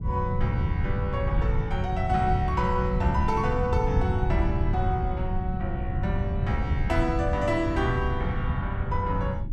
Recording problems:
rumble; below 120 Hz, SNR 0 dB

